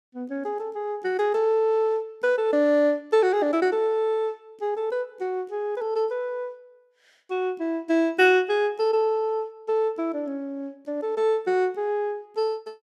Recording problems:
none

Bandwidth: 14 kHz